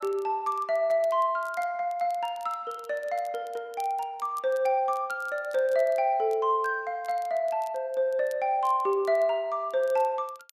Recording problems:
crackle; vinyl, SNR 27 dB

